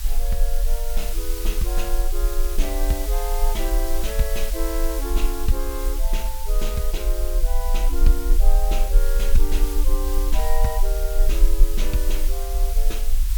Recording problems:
background hiss; slope +3 dB per octave, SNR 4 dB
low-frequency rumble; below 38 Hz, strongest tone 20 Hz, SNR -6 dB

